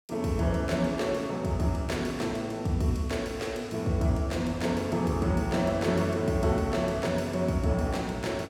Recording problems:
none

